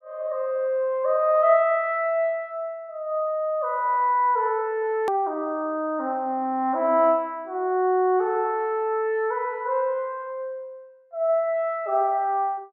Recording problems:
hard cut with a click; at 5 s

